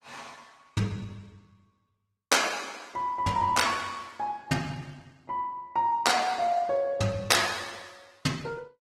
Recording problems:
codec artefacts; Opus, log-spectral distance 4 dB, nothing above 16.6 kHz

